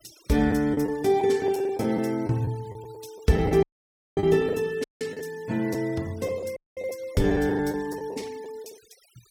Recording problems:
denoising artefacts; signal-to-artefact ratio 23 dB
lost packets; 9% of the sound replaced, filled with the last packet
audio cutting out; at 3.5 s for 0.5 s, at 5 s and at 6.5 s

